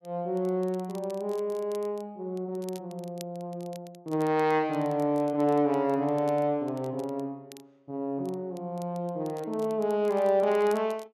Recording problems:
crackling; vinyl, SNR 25 dB

